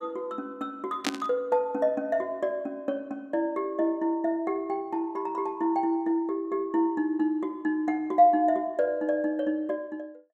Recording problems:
burst of static; at 1 s; peak +1 dB vs average level

